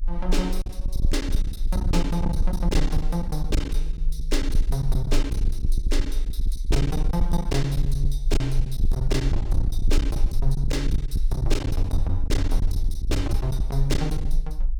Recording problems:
rumble; below 46 Hz, strongest tone 24 Hz, SNR -2 dB
lost packets; 15% of the sound replaced, filled with silence

